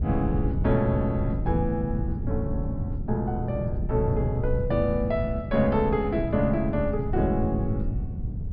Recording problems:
low-pass filter; nothing above 5.5 kHz
wind noise; below 140 Hz, SNR 3 dB

